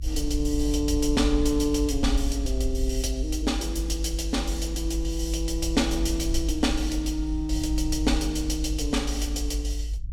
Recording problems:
low-frequency rumble; below 54 Hz, strongest tone 52 Hz, SNR 3 dB

